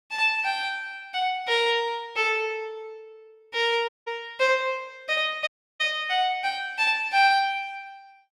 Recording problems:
audio cutting out; at 4 s and at 5.5 s

